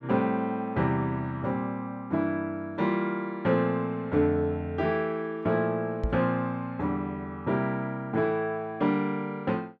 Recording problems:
microphone thump; at 6 s; peak +2 dB vs average level

